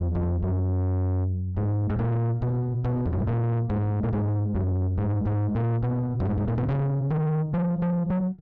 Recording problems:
distortion; soft clipping, signal-to-distortion ratio 6 dB

